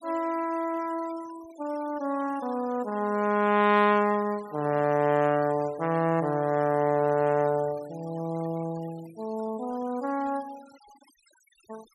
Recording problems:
noise reduction artefacts; signal-to-artefact ratio 23 dB

